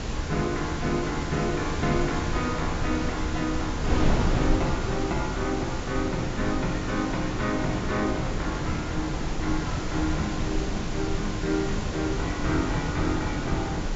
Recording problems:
low-pass filter; nothing above 7.5 kHz
hiss; slope -1 dB per octave, SNR 9 dB
wind noise; below 290 Hz, SNR 2 dB

